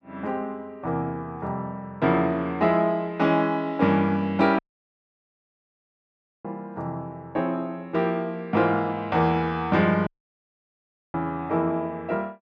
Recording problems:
audio cutting out; at 4.5 s for 2 s and at 10 s for 1 s

